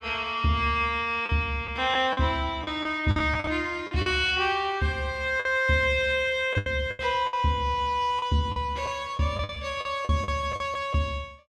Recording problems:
lost packets; 9% of the sound replaced, filled with the last packet

